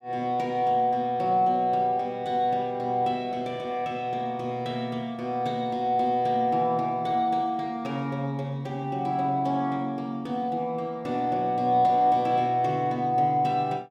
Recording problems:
none

